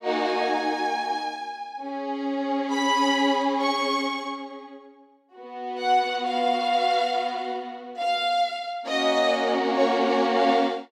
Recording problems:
none

